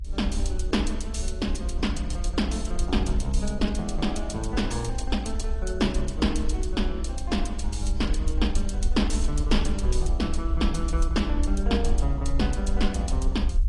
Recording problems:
lossy compression; AAC, log-spectral distance 2 dB, nothing above 10.1 kHz
rumble; below 60 Hz, SNR 0 dB

